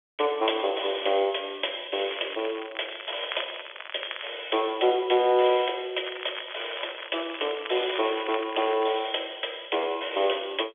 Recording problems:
telephone audio; 320 Hz to 3.5 kHz, G.711
crackle; from 2 to 4.5 s and from 6 to 9 s; loose cable, SNR 12 dB

